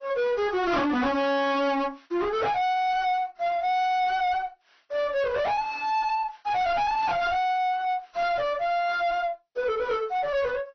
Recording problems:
treble missing; nothing above 6 kHz
lossy codec; AAC, log-spectral distance 2 dB
distorted audio; soft clipping, signal-to-distortion ratio 7 dB

